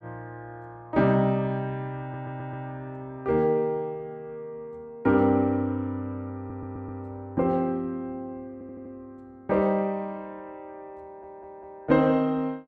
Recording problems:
stutter; 4 times, first at 2 s

